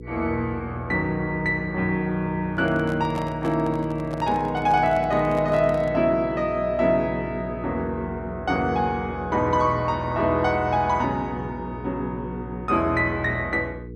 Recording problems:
hum; 60 Hz, harmonics up to 480 Hz, SNR 14 dB
microphone handling noise; from 2.5 to 6 s; peak -7 dB vs average level

